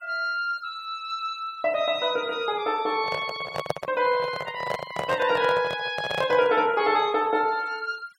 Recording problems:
noise reduction artefacts; signal-to-artefact ratio 24 dB
microphone handling noise; from 3 to 6.5 s; peak +3 dB vs average level

